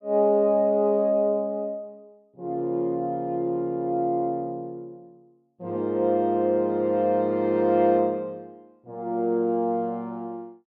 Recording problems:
none

